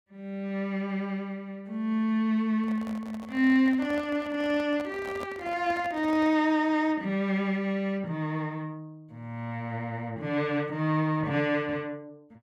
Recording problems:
handling noise; from 2.5 to 6.5 s; peak -7 dB vs average level

